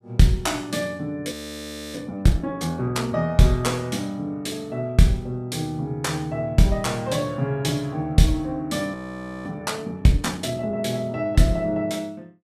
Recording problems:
audio freezing; at 1.5 s for 0.5 s and at 9 s for 0.5 s

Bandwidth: 14.5 kHz